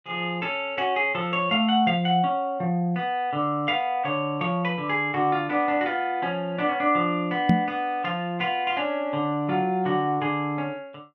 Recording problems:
knock on the microphone; at 7.5 s; peak +8 dB vs average level

